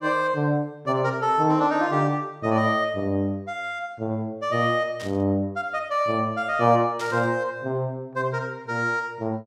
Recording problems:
burst of static; at 5 s and at 7 s; peak -8 dB vs average level

